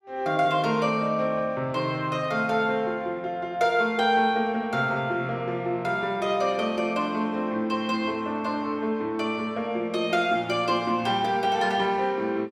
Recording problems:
none

